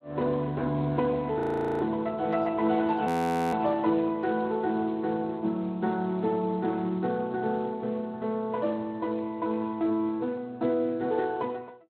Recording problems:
lossy compression; Speex, log-spectral distance 2 dB, nothing above 13.1 kHz
audio freezing; at 1.5 s and at 3 s

